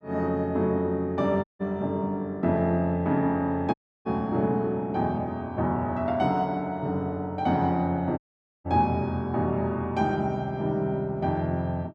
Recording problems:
dropout; at 1.5 s, at 3.5 s and at 8 s

